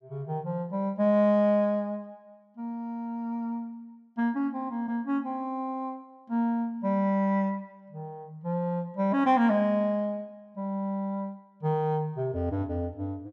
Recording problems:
none

